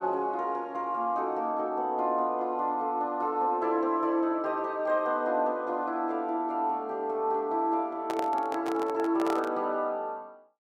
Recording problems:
handling noise; from 8 to 9.5 s; peak -1 dB vs average level

